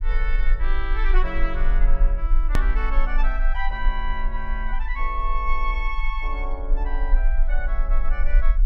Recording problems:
low-frequency rumble; below 36 Hz, strongest tone 20 Hz, SNR -5 dB
hard cut with a click; at 2.5 s

